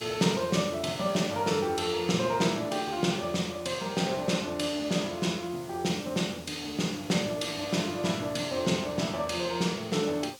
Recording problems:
background hiss; SNR 21 dB

